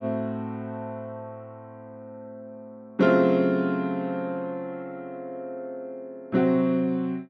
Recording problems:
none

